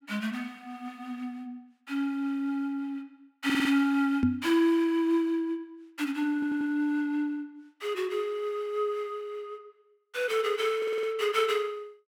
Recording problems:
audio stuttering; at 3.5 s, at 6.5 s and at 11 s
microphone thump; at 4 s; peak +8 dB vs average level

